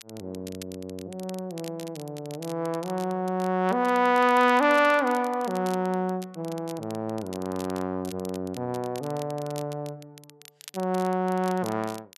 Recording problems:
crackling; vinyl, SNR 20 dB

